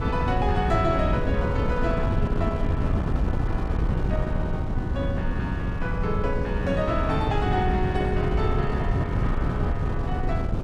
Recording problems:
wind noise; below 170 Hz, SNR -2 dB

